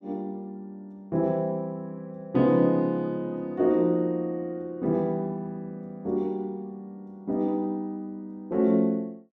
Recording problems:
none

